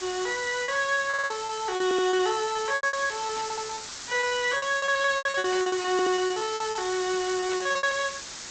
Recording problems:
lossy codec; G.722, log-spectral distance 17 dB
background hiss; slope +1 dB per octave, SNR 10 dB
lost packets; 22% of the sound replaced, filled with repeated pitch periods
stutter; 4 times, first at 1 s
static burst; at 3.5 s, at 5.5 s and at 7.5 s; peak -8 dB vs average level

